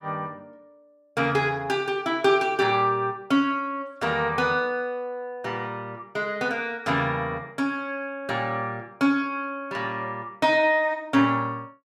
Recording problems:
none

